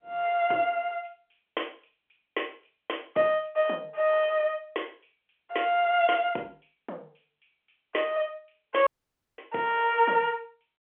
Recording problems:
phone line; 280 Hz to 3.3 kHz, G.711
dropout; at 9 s for 0.5 s

